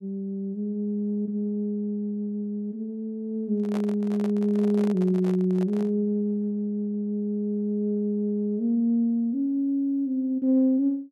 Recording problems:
handling noise; from 3.5 to 6 s; peak -7 dB vs average level

